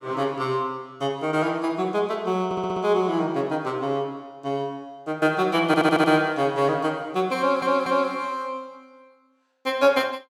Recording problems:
audio stuttering; at 2.5 s, at 5.5 s and at 7.5 s

